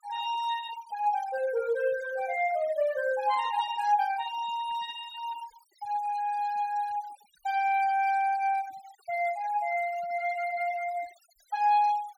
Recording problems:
noise reduction artefacts; signal-to-artefact ratio 19 dB

